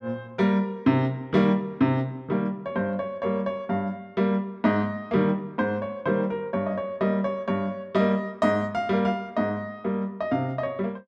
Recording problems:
none

